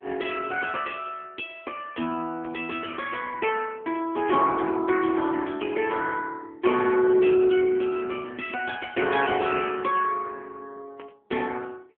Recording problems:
phone line; 220 Hz to 2.9 kHz, AMR-NB
static burst; 4 times, first at 2.5 s; peak -16 dB vs average level

